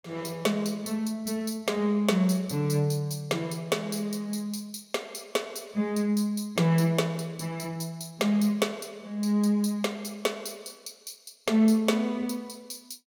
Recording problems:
none

